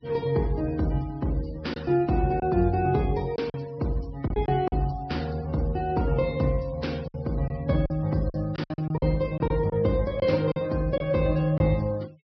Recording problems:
treble cut off; nothing above 5.5 kHz
noise reduction artefacts; signal-to-artefact ratio 24 dB
packet loss; 6% of the sound replaced, filled with silence

